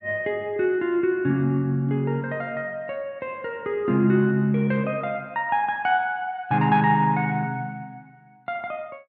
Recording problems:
none

